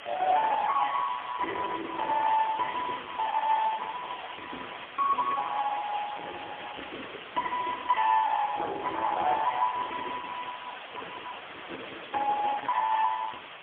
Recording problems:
phone line; 280 Hz to 3.3 kHz, AMR-NB, then MP3
distortion; soft clipping, signal-to-distortion ratio 8 dB
background hiss; SNR 11 dB

